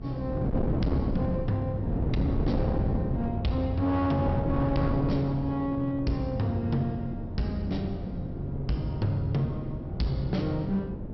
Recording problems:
treble cut off; nothing above 5.6 kHz
distorted audio; hard clipping, uneven, signal-to-distortion ratio 12 dB
hum; 50 Hz, harmonics up to 900 Hz, SNR 21 dB
wind on the microphone; below 270 Hz, SNR 3 dB

